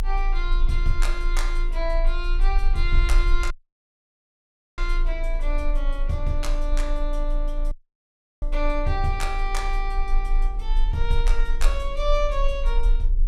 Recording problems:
hum; 50 Hz, harmonics up to 500 Hz, SNR 18 dB
low-frequency rumble; below 32 Hz, strongest tone 28 Hz, SNR -3 dB
audio cutting out; at 3.5 s for 1.5 s and at 7.5 s for 0.5 s

